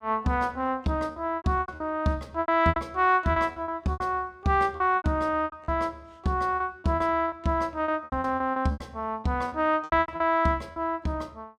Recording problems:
packet loss; 14% of the sound replaced, filled with repeated pitch periods

